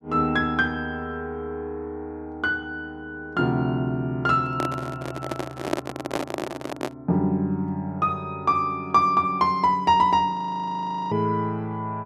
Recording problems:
handling noise; from 4.5 to 7 s; peak +4 dB vs average level
audio freezing; at 10 s for 1 s

